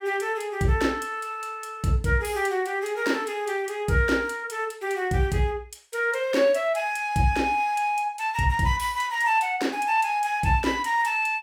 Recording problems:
none

